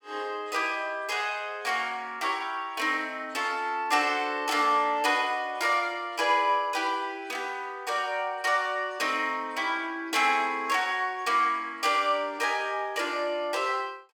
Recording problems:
none

